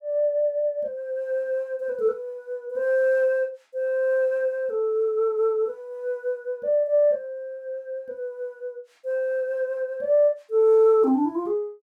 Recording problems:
none

